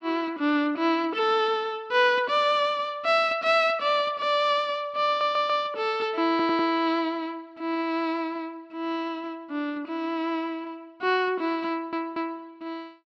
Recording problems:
audio stuttering; at 5 s, at 6.5 s and at 12 s

